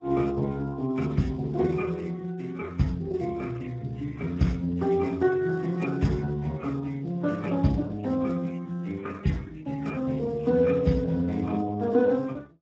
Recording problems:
codec artefacts; MP3, then Speex, log-spectral distance 11 dB
crackling; from 3 to 5 s, from 6.5 to 9 s and from 9 to 11 s; loose cable, SNR 27 dB

